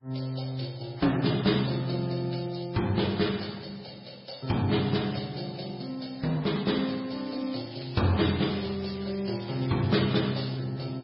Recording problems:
codec artefacts; Vorbis, then MP3, log-spectral distance 8 dB, nothing above 5 kHz
crackling; from 7 to 10 s; loose cable, SNR 18 dB

